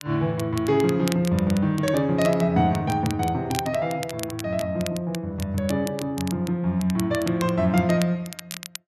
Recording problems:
crackle; vinyl, SNR 14 dB

